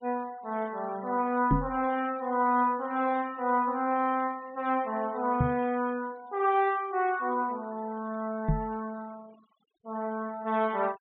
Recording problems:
treble missing; nothing above 4 kHz
denoising artefacts; signal-to-artefact ratio 25 dB
knock on the microphone; at 1.5 s, at 5.5 s and at 8.5 s; peak +7 dB vs average level

